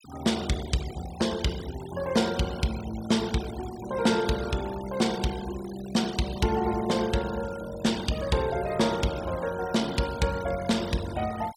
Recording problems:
noise reduction artefacts; signal-to-artefact ratio 15 dB

